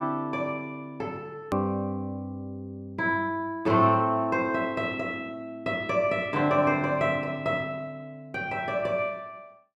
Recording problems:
hard cut with a click; at 1.5 s

